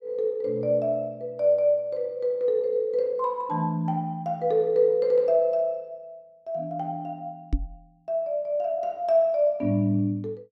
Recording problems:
microphone thump; at 7.5 s; peak +3 dB vs average level

